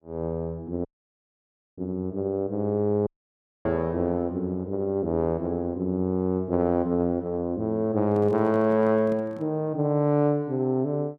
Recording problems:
audio cutting out; at 1 s for 1 s and at 3 s for 0.5 s
microphone handling noise; from 8 to 9.5 s; peak -11 dB vs average level

